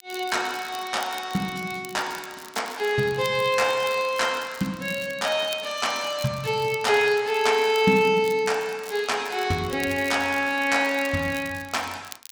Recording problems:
crackle; vinyl, SNR 19 dB

